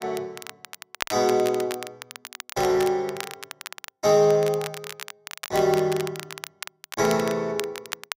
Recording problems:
crackle; vinyl, SNR 13 dB

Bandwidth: 15.5 kHz